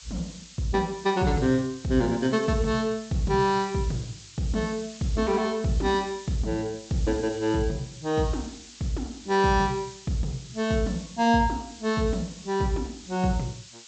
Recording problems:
treble cut off; nothing above 8 kHz
hiss; slope +5 dB per octave, SNR 18 dB

